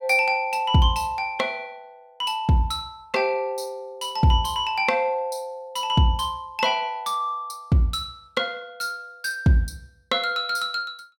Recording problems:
none

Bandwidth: 17 kHz